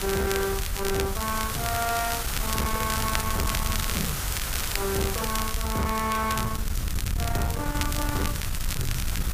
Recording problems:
distorted audio; hard clipping, signal-to-distortion ratio 11 dB
hiss; SNR 3 dB
wind on the microphone; below 110 Hz, SNR 4 dB
crackling; vinyl, SNR 6 dB

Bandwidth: 15 kHz